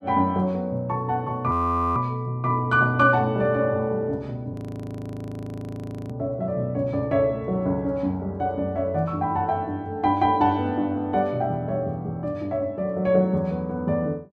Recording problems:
audio freezing; at 1.5 s and at 4.5 s for 1.5 s

